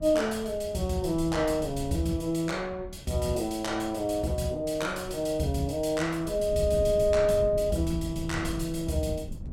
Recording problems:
wind noise; below 160 Hz, SNR 13 dB

